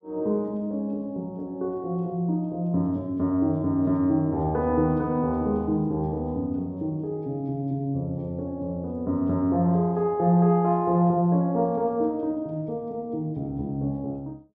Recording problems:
none

